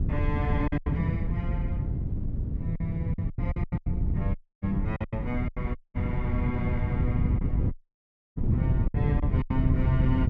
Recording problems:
wind noise; below 150 Hz, SNR -6 dB
lost packets; 10% of the sound replaced, filled with silence
dropout; at 4.5 s, at 6 s and at 7.5 s for 0.5 s

